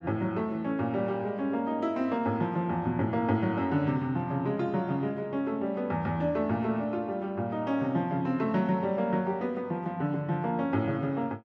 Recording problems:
none

